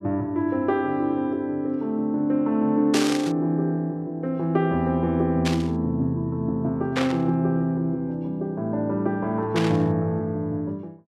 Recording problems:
burst of static; 4 times, first at 3 s; peak +2 dB vs average level

